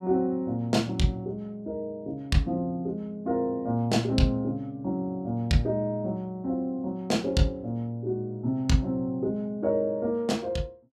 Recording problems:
none

